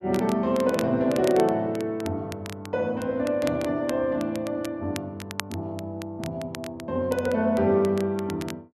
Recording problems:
crackle; vinyl, SNR 16 dB

